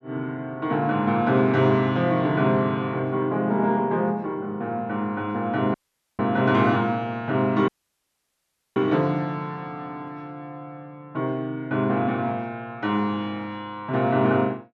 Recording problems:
audio cutting out; at 5.5 s and at 7.5 s for 1 s

